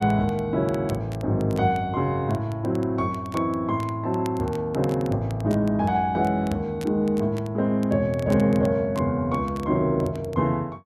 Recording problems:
crackle; vinyl, SNR 24 dB

